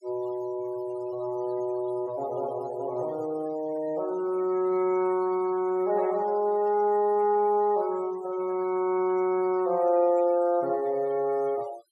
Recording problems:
noise reduction artefacts; signal-to-artefact ratio 22 dB

